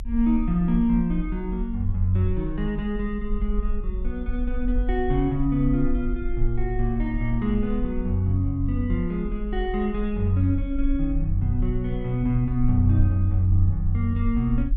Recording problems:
rumble; below 44 Hz, SNR 6 dB

